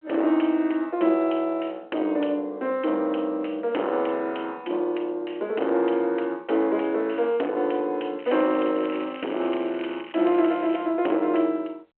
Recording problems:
phone line; 260 Hz to 3.2 kHz, G.726
distorted audio; soft clipping, signal-to-distortion ratio 10 dB
crackling; from 8 to 11 s; loose cable, SNR 19 dB

